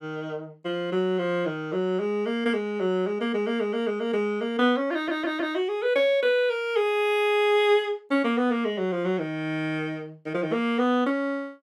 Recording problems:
stutter; at 5 s

